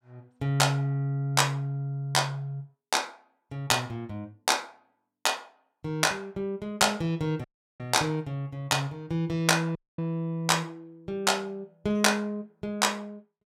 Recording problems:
audio cutting out; at 7.5 s and at 10 s

